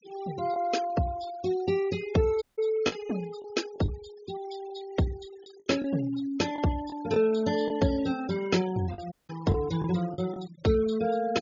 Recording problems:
treble cut off; nothing above 6.9 kHz
noise reduction artefacts; signal-to-artefact ratio 17 dB
lost packets; 3% of the sound replaced, filled with the last packet
audio cutting out; at 2.5 s and at 9 s

